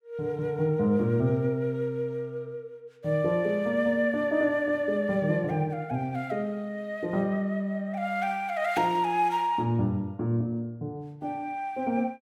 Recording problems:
none

